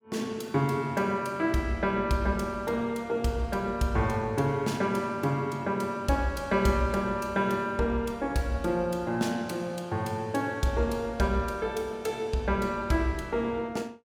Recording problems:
none

